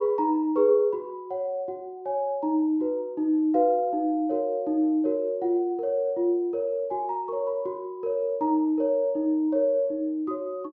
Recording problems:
low-pass filter; nothing above 6.7 kHz

